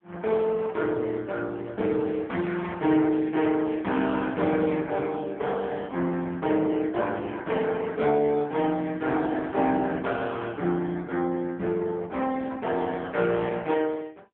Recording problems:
phone line; 130 Hz to 3.5 kHz, AMR-NB

